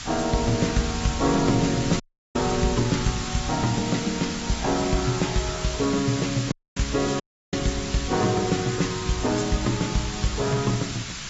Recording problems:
low-pass filter; nothing above 7.6 kHz
codec artefacts; AAC, log-spectral distance 12 dB
hiss; slope +2 dB per octave, SNR 6 dB
wind noise; below 160 Hz, SNR 16 dB
dropout; at 2 s, at 6.5 s and at 7 s

